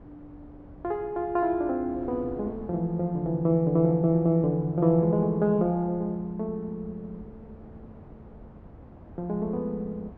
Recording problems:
wind noise; below 400 Hz, SNR 21 dB

